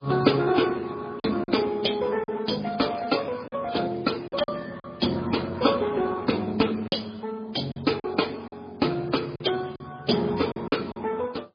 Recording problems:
codec artefacts; Speex, then MP3, log-spectral distance 7 dB, nothing above 5 kHz
packet loss; 6% of the sound replaced, filled with silence
crackle; at 2.5 s; loose cable, SNR 23 dB

